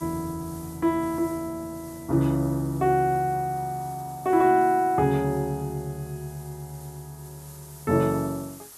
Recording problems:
hiss; SNR 21 dB

